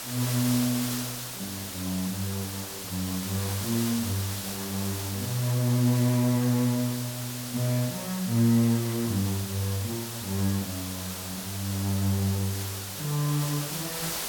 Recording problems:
hiss; slope -1 dB per octave, SNR 5 dB

